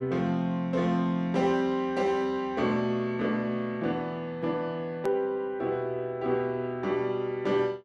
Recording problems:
hard cut with a click; at 5 s

